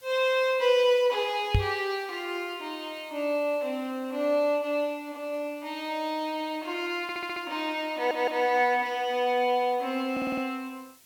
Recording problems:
background hiss; SNR 27 dB
microphone thump; at 1.5 s; peak +7 dB vs average level
audio stuttering; at 7 s, at 8 s and at 10 s

